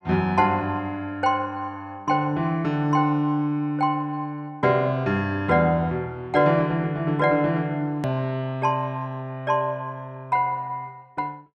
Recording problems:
click at an edit; at 8 s

